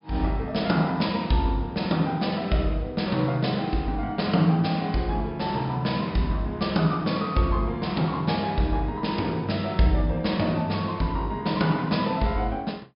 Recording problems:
low-pass filter; nothing above 5.5 kHz

